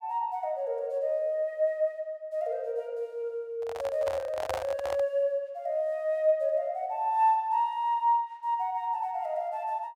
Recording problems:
microphone handling noise; from 3.5 to 5 s; peak +1 dB vs average level

